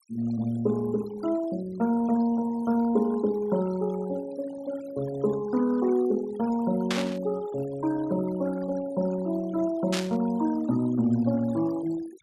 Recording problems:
denoising artefacts; signal-to-artefact ratio 18 dB
burst of static; at 7 s and at 10 s; peak +1 dB vs average level

